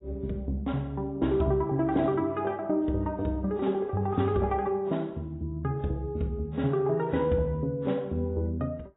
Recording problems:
lossy compression; AAC, log-spectral distance 2 dB, nothing above 3.8 kHz

